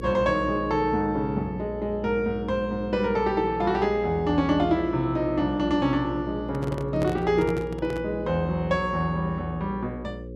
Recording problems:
hum; 60 Hz, harmonics up to 540 Hz, SNR 12 dB
handling noise; from 6.5 to 8 s; peak -1 dB vs average level

